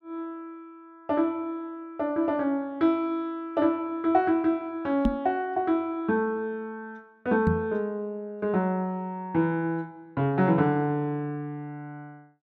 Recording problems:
knock on the microphone; at 5 s and at 7.5 s; peak +7 dB vs average level

